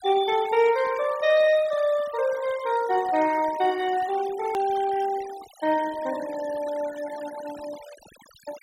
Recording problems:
denoising artefacts; signal-to-artefact ratio 18 dB
hard cut with a click; at 4.5 s

